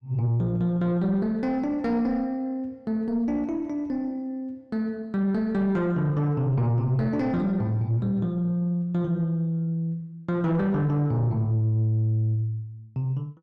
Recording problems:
distorted audio; soft clipping, signal-to-distortion ratio 11 dB

